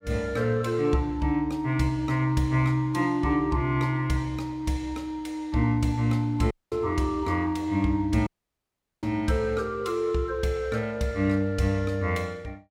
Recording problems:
audio cutting out; at 6.5 s and at 8.5 s for 1 s

